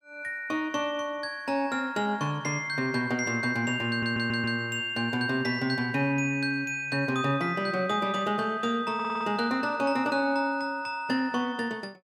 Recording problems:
audio stuttering; at 4 s and at 9 s

